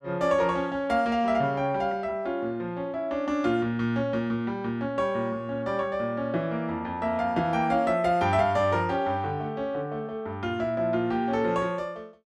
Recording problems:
none

